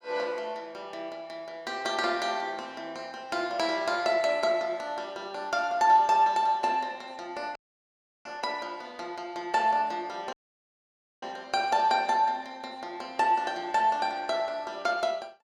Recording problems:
dropout; at 7.5 s for 0.5 s and at 10 s for 1 s

